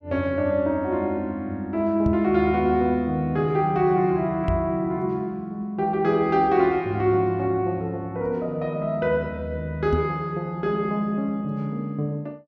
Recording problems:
microphone bump; at 2 s, at 4.5 s and at 10 s; peak +2 dB vs average level

